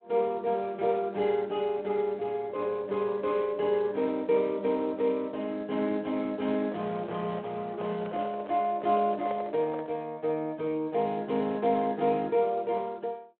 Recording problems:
phone line; 220 Hz to 3.7 kHz, Speex
handling noise; from 6.5 to 10 s; peak -5 dB vs average level

